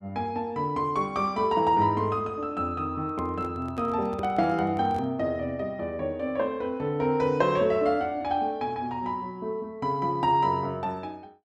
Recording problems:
microphone handling noise; from 3 to 5 s; peak -8 dB vs average level

